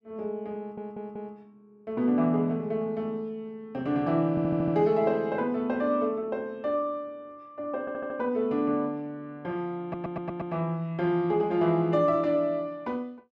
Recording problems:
audio stuttering; 4 times, first at 0.5 s

